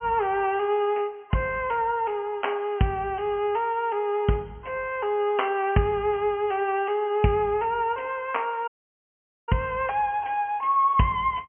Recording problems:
low-pass filter; nothing above 3.1 kHz
dropout; at 8.5 s for 1 s

